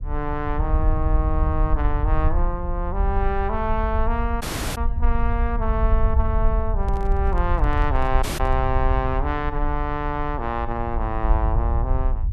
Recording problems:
rumble; below 66 Hz, SNR -1 dB
dropout; at 4.5 s and at 8 s
handling noise; from 7 to 8.5 s; peak -8 dB vs average level

